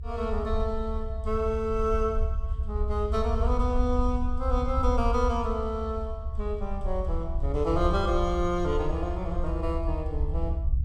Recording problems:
low-frequency rumble; below 74 Hz, SNR 2 dB

